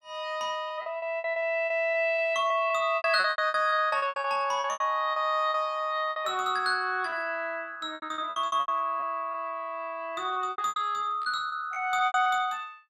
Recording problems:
lost packets; 15% of the sound replaced, filled with repeated pitch periods

